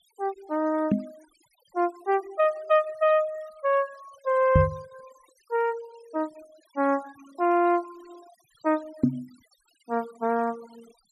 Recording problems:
denoising artefacts; signal-to-artefact ratio 25 dB
knock on the microphone; at 1 s, at 4.5 s and at 9 s; peak +9 dB vs average level

